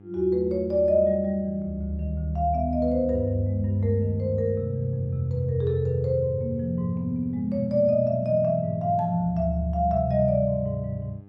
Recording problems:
electrical hum; 50 Hz, harmonics up to 900 Hz, SNR 24 dB

